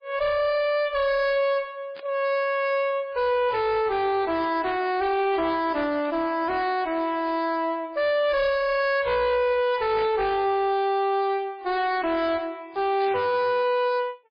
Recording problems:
codec artefacts; MP3, then MP3, log-spectral distance 2 dB, nothing above 5 kHz
distorted audio; hard clipping, uneven, signal-to-distortion ratio 7 dB
burst of static; 5 times, first at 2 s; peak -14 dB vs average level

